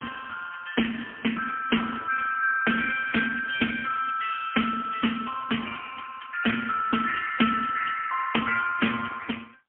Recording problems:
telephone audio; 260 Hz to 3.2 kHz, AMR-NB, then MP3

